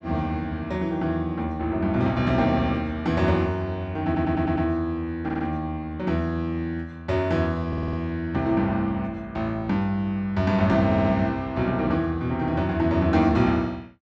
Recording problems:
stutter; 4 times, first at 4 s

